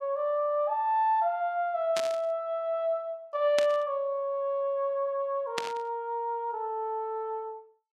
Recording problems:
static burst; at 2 s, at 3.5 s and at 5.5 s; peak +2 dB vs average level

